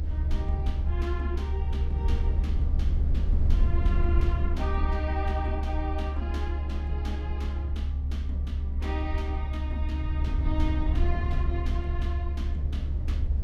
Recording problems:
low-frequency rumble; below 72 Hz, SNR -8 dB

